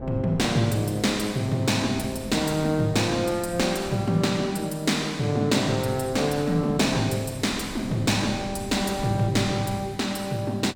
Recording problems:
wind on the microphone; below 270 Hz, SNR 17 dB

